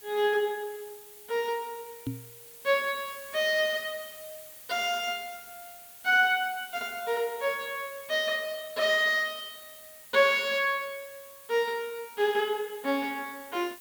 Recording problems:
hiss; slope 0 dB per octave, SNR 17 dB
knock on the microphone; at 2 s; peak -2 dB vs average level

